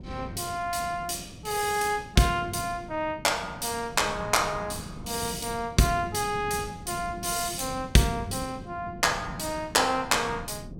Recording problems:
wind noise; below 230 Hz, SNR 15 dB

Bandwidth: 17.5 kHz